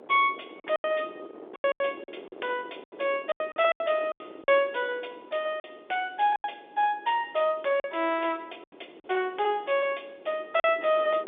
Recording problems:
phone line; 280 Hz to 3.6 kHz, G.711
wind noise; below 550 Hz, SNR 19 dB
packet loss; 9% of the sound replaced, filled with silence

